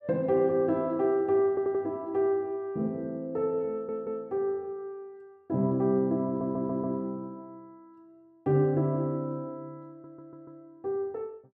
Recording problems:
audio stuttering; 4 times, first at 1.5 s

